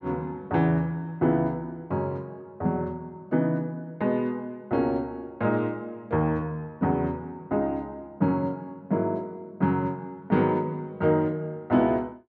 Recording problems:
none

